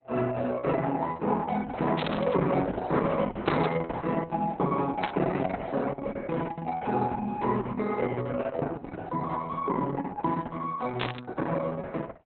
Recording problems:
lossy codec; Opus, log-spectral distance 4 dB, nothing above 4 kHz
static burst; 4 times, first at 2 s; peak +1 dB vs average level

